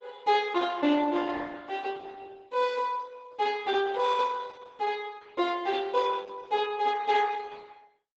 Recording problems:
lossy compression; Opus, log-spectral distance 4 dB, nothing above 7.6 kHz

